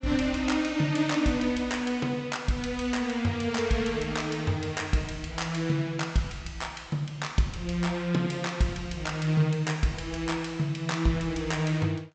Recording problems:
treble cut off; nothing above 8 kHz

